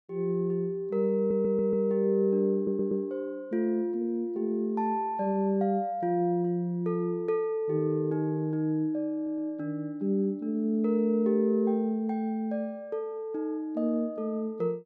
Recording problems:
audio stuttering; at 1 s, at 2.5 s and at 9 s

